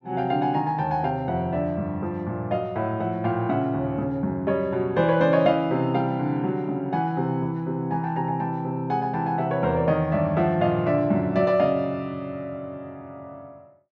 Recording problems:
none

